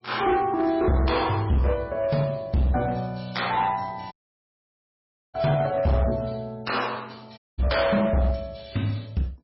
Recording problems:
lossy compression; MP3, log-spectral distance 5 dB, nothing above 5.5 kHz
distorted audio; hard clipping, uneven, signal-to-distortion ratio 9 dB
dropout; at 4 s for 1 s and at 7.5 s

